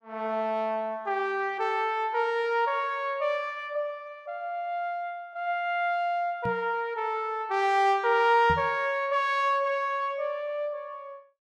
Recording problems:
knock on the microphone; at 6.5 s and at 8.5 s; peak -2 dB vs average level

